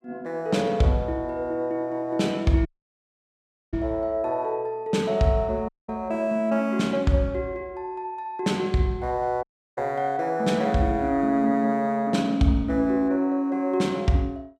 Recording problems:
audio cutting out; at 2.5 s for 1 s, at 5.5 s and at 9.5 s

